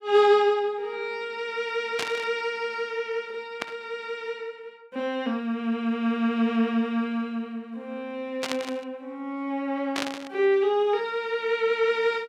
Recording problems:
burst of static; 4 times, first at 2 s; peak +1 dB vs average level

